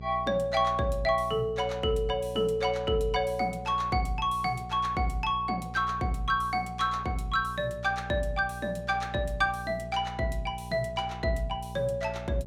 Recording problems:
hum; 60 Hz, harmonics up to 660 Hz, SNR 13 dB

